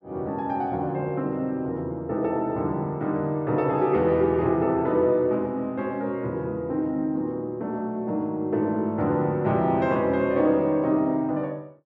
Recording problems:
none

